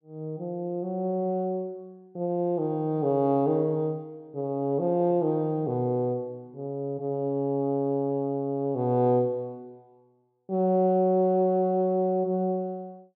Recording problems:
none

